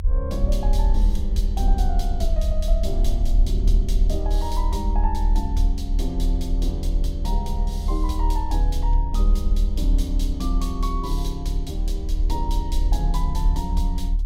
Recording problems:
low-frequency rumble; below 44 Hz, strongest tone 36 Hz, SNR -6 dB

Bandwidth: 16 kHz